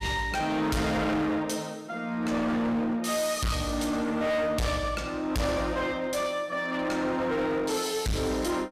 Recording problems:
distorted audio; hard clipping, uneven, signal-to-distortion ratio 6 dB

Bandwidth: 15 kHz